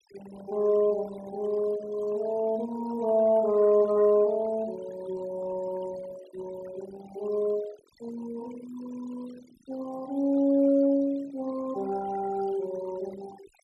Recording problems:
denoising artefacts; signal-to-artefact ratio 20 dB

